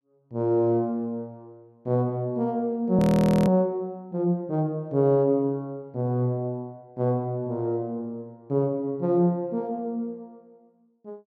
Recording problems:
frozen audio; at 3 s

